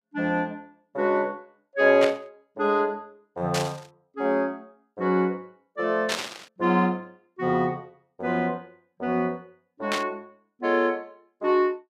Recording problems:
burst of static; 4 times, first at 2 s; peak +2 dB vs average level

